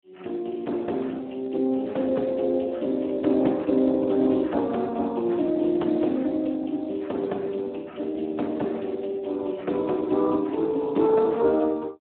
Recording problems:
phone line; 190 Hz to 3.1 kHz, Speex

